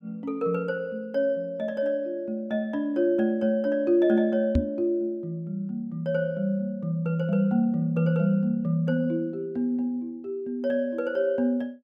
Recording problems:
knock on the microphone; at 4.5 s; peak +7 dB vs average level

